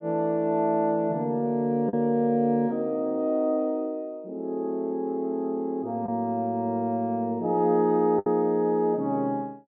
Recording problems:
lost packets; 1.4% of the sound replaced, filled with the last packet

